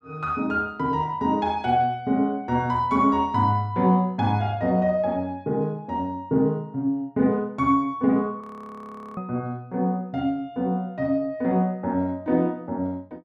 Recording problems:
audio freezing; at 8.5 s for 1 s

